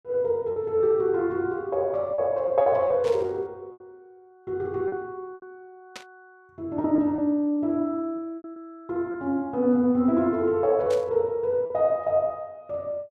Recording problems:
lost packets; 6% of the sound replaced, filled with repeated pitch periods
static burst; at 3 s, at 6 s and at 11 s; peak -9 dB vs average level

